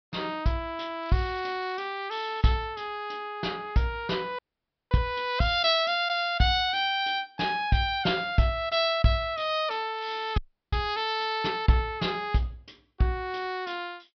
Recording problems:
treble missing; nothing above 5.5 kHz
crackle; at 1 s and at 10 s; loose cable, SNR 27 dB
frozen audio; at 4.5 s for 0.5 s and at 10 s

